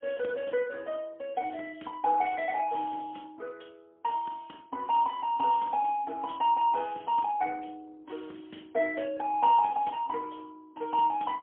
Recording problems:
telephone audio; 220 Hz to 3.4 kHz, AMR-NB, then MP3

